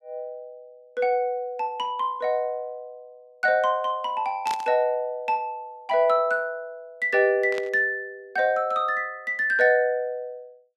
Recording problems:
burst of static; at 4.5 s and at 7.5 s; peak -7 dB vs average level

